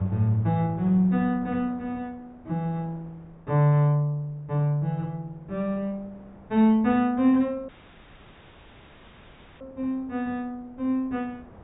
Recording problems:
treble missing; nothing above 4 kHz
wind on the microphone; below 660 Hz, SNR 26 dB
dropout; at 7.5 s for 2 s

